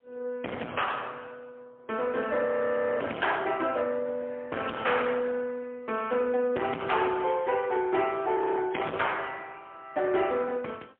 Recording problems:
telephone audio; 240 Hz to 3.1 kHz, AMR-NB, then MP3
distortion; soft clipping, signal-to-distortion ratio 8 dB
audio freezing; at 2.5 s for 0.5 s and at 8.5 s

